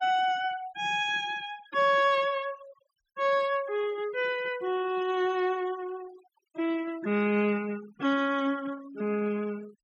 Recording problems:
denoising artefacts; signal-to-artefact ratio 20 dB

